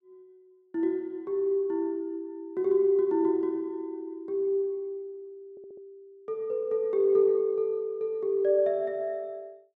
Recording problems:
audio stuttering; at 5.5 s

